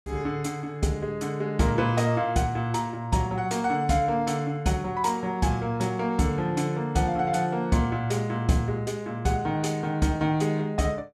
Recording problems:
none

